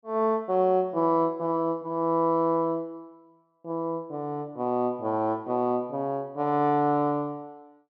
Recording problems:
none

